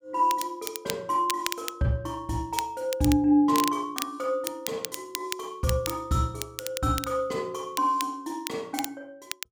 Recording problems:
crackle; vinyl, SNR 8 dB

